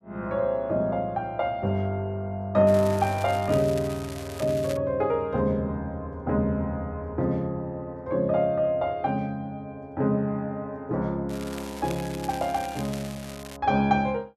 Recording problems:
crackling; from 2.5 to 5 s and from 11 to 14 s; loose cable, SNR 16 dB

